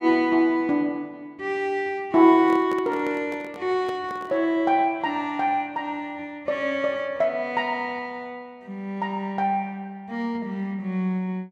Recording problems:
handling noise; from 2.5 to 4.5 s; peak -7 dB vs average level

